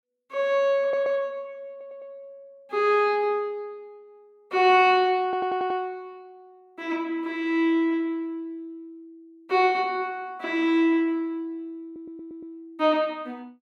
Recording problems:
stutter; 4 times, first at 1 s

